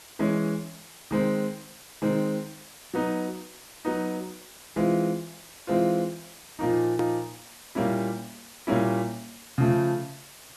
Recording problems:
background hiss; slope -1 dB per octave, SNR 18 dB
hard cut with a click; at 7 s

